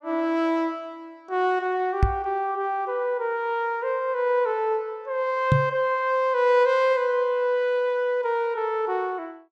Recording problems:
knock on the microphone; at 2 s and at 5.5 s; peak +7 dB vs average level

